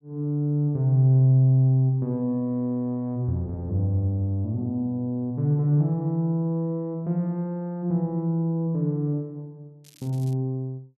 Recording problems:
crackling; at 10 s; loose cable, SNR 28 dB

